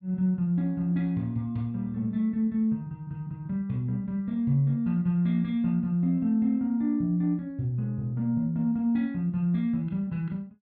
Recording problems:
none

